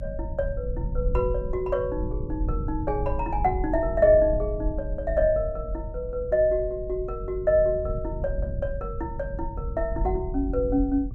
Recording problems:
low-frequency rumble; below 84 Hz, SNR 6 dB

